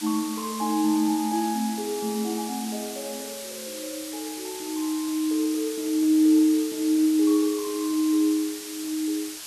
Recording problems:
background hiss; slope +2 dB per octave, SNR 11 dB

